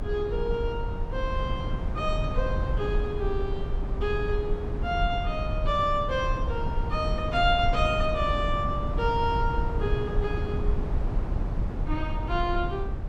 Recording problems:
low-frequency rumble; below 110 Hz, SNR 1 dB

